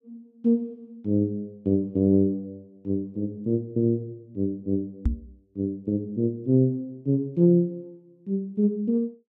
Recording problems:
microphone thump; at 5 s; peak +5 dB vs average level

